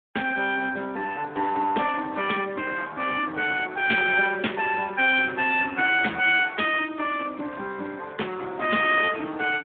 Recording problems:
phone line; 240 Hz to 3.4 kHz, Speex

